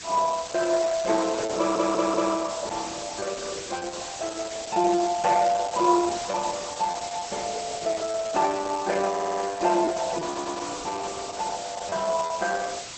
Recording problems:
lossy compression; Opus, log-spectral distance 16 dB, nothing above 7.6 kHz
background hiss; slope +1 dB per octave, SNR 10 dB
lost packets; 6% of the sound replaced, filled with repeated pitch periods
audio stuttering; at 1.5 s, at 9 s and at 10 s

